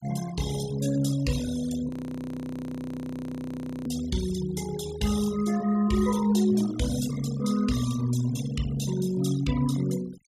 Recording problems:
denoising artefacts; signal-to-artefact ratio 13 dB
audio freezing; at 2 s for 2 s

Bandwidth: 14.5 kHz